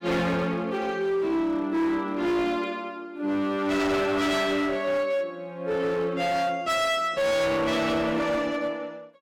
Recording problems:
distorted audio; hard clipping, uneven, signal-to-distortion ratio 7 dB

